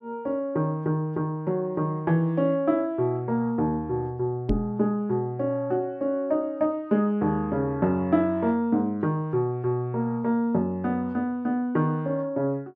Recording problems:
microphone bump; at 4.5 s; peak +2 dB vs average level

